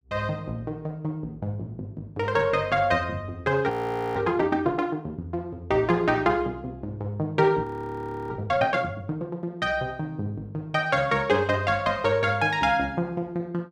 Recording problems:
frozen audio; at 3.5 s and at 7.5 s for 0.5 s

